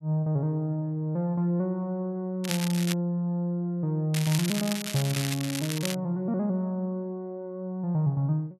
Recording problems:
crackling; at 2.5 s and from 4 to 6 s; loose cable, SNR 6 dB

